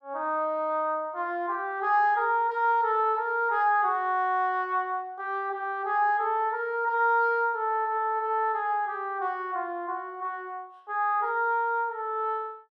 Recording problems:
none

